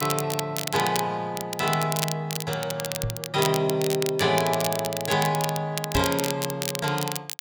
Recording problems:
crackling; vinyl, SNR 5 dB
knock on the microphone; at 3 s and at 6 s; peak +1 dB vs average level

